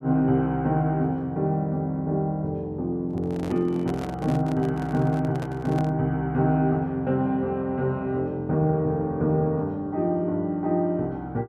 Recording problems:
microphone handling noise; from 3 to 6 s; peak -7 dB vs average level

